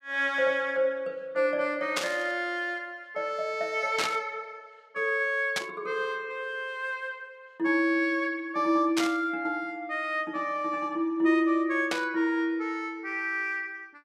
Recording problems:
static burst; 5 times, first at 2 s; peak +3 dB vs average level

